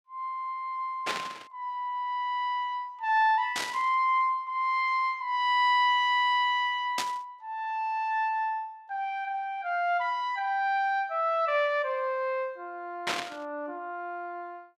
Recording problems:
burst of static; 4 times, first at 1 s; peak +2 dB vs average level

